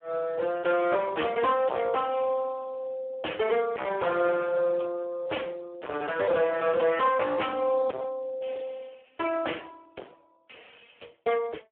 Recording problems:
phone line; 320 Hz to 2.1 kHz, Speex
distortion; hard clipping, uneven, signal-to-distortion ratio 5 dB

